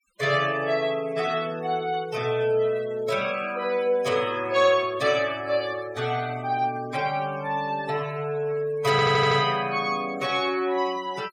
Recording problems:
denoising artefacts; signal-to-artefact ratio 17 dB
stutter; at 9 s

